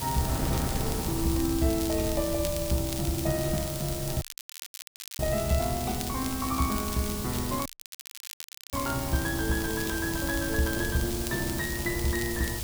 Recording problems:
hiss; slope +3 dB per octave, SNR 5 dB
low-frequency rumble; below 98 Hz, SNR 9 dB
wind on the microphone; below 430 Hz, SNR 10 dB
crackle; vinyl, SNR 11 dB
dropout; at 4 s for 1 s and at 7.5 s for 1 s

